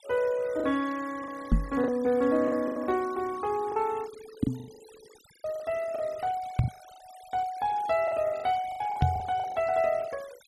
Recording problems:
noise reduction artefacts; signal-to-artefact ratio 21 dB
lost packets; 11% of the sound replaced, filled with the last packet
microphone thump; 4 times, first at 1.5 s; peak +8 dB vs average level

